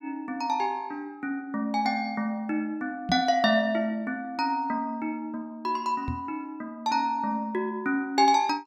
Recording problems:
microphone bump; at 3 s and at 6 s; peak 0 dB vs average level

